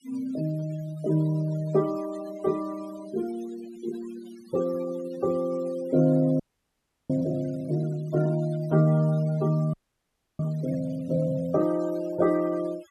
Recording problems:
noise reduction artefacts; signal-to-artefact ratio 20 dB
frozen audio; at 6.5 s for 0.5 s and at 9.5 s for 0.5 s

